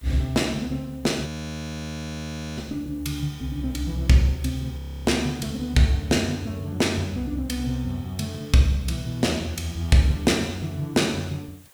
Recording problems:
background hiss; slope -2 dB per octave, SNR 28 dB
audio freezing; at 1.5 s for 1.5 s and at 5 s

